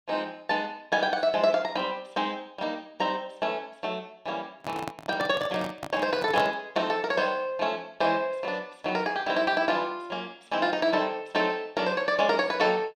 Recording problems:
microphone handling noise; from 4.5 to 6.5 s; peak -1 dB vs average level

